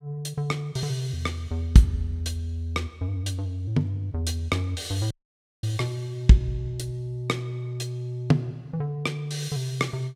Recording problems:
dropout; at 5 s for 0.5 s

